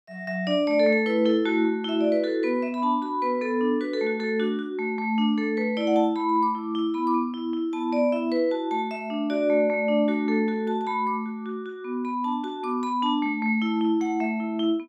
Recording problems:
none

